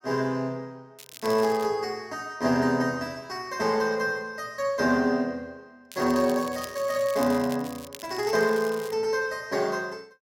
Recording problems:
crackle; at 1 s and from 6 to 9 s; loose cable, SNR 17 dB

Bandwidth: 16.5 kHz